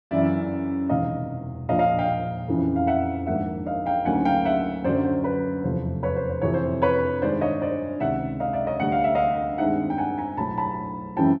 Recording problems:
none

